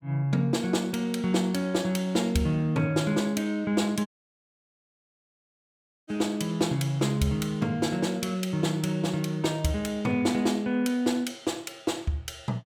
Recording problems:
dropout; at 4 s for 2 s

